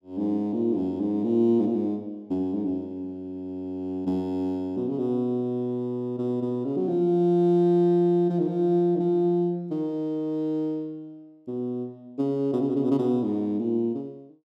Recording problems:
none

